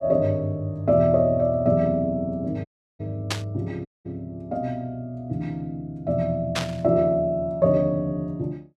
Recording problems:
dropout; at 2.5 s and at 4 s
static burst; at 3.5 s and at 6.5 s; peak +2 dB vs average level

